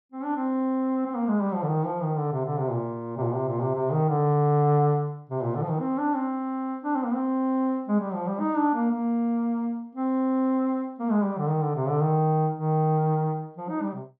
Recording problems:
none

